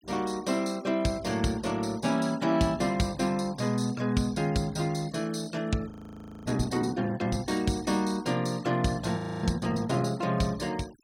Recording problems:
denoising artefacts; signal-to-artefact ratio 23 dB
audio freezing; at 6 s for 0.5 s and at 9 s

